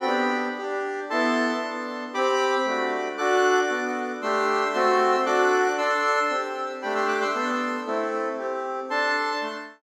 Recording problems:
none

